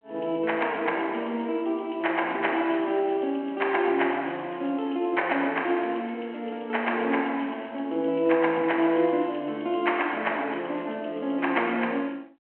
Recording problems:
phone line; 220 Hz to 3.3 kHz, G.726

